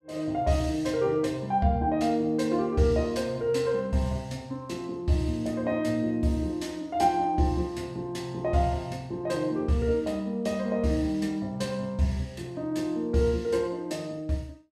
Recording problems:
none

